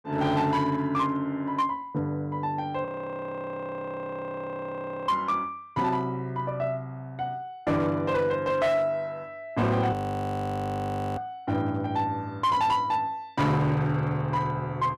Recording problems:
distorted audio; hard clipping, signal-to-distortion ratio 12 dB
frozen audio; at 3 s for 2 s and at 10 s for 1 s

